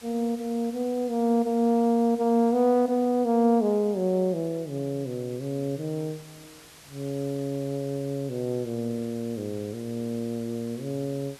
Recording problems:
background hiss; slope -1 dB per octave, SNR 22 dB

